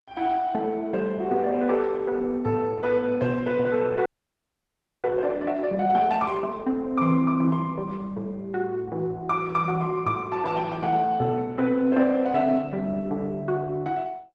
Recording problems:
lossy codec; Opus, log-spectral distance 2 dB
audio freezing; at 4 s for 1 s

